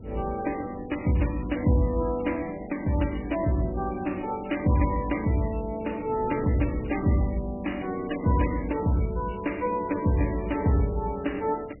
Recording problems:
codec artefacts; MP3, log-spectral distance 9 dB, nothing above 2.9 kHz
wind on the microphone; below 300 Hz, SNR 18 dB

